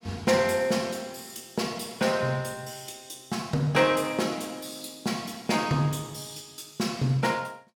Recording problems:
none

